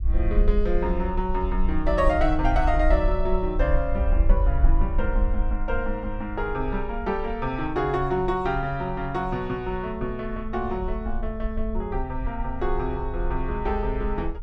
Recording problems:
rumble; below 52 Hz, SNR 2 dB

